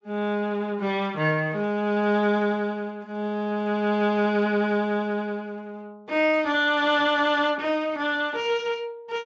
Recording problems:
codec artefacts; Speex, log-spectral distance 2 dB

